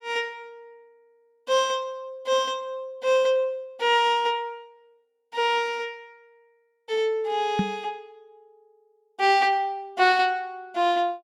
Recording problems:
microphone bump; at 7.5 s; peak +3 dB vs average level

